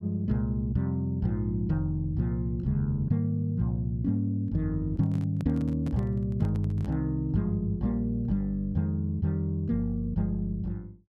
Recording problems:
handling noise; from 5 to 7 s; peak -6 dB vs average level

